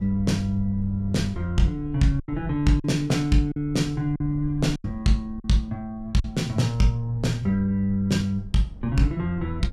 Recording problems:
wind noise; below 76 Hz, SNR 16 dB
packet loss; 4% of the sound replaced, filled with silence

